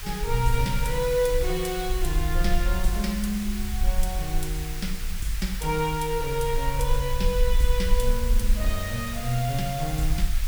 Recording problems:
background hiss; SNR 8 dB
low-frequency rumble; below 48 Hz, strongest tone 20 Hz, SNR 2 dB

